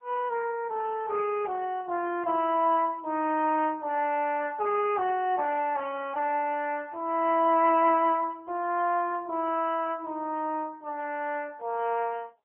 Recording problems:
telephone audio; 280 Hz to 3.1 kHz, AMR-NB

